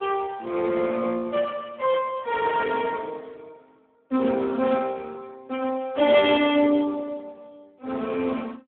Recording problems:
telephone audio; 240 Hz to 3.5 kHz, Speex

